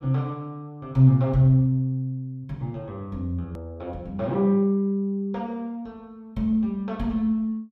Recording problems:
click at an edit; at 3.5 s

